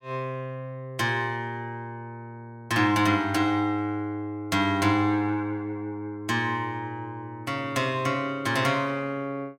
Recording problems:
none

